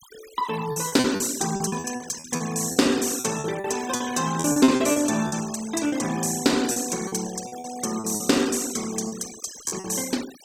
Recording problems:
denoising artefacts; signal-to-artefact ratio 13 dB
packet loss; 12% of the sound replaced, filled with repeated pitch periods

